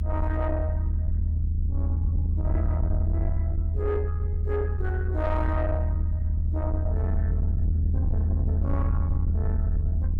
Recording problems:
distortion; soft clipping, signal-to-distortion ratio 10 dB
low-frequency rumble; below 80 Hz, strongest tone 78 Hz, SNR -7 dB

